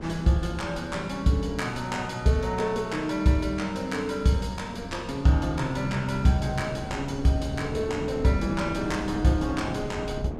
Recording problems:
wind noise; below 350 Hz, SNR 11 dB

